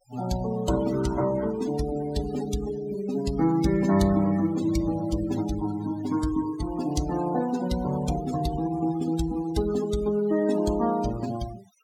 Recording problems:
noise reduction artefacts; signal-to-artefact ratio 14 dB

